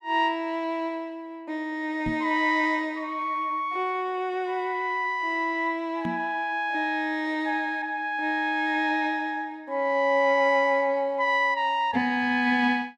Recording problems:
knock on the microphone; at 2 s and at 6 s; peak -3 dB vs average level

